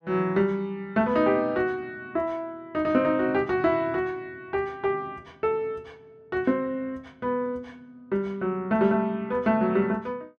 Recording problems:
none

